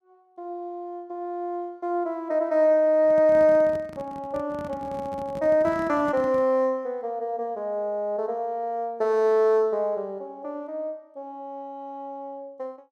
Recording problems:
microphone handling noise; from 3 to 6.5 s; peak -9 dB vs average level

